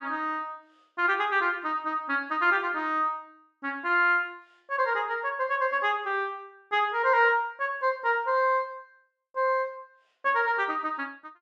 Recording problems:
none

